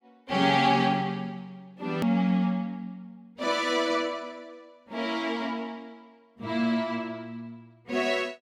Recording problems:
edit click; at 2 s

